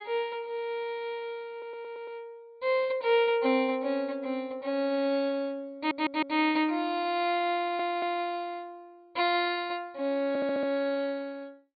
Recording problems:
low-pass filter; nothing above 4.8 kHz
audio stuttering; 4 times, first at 1.5 s

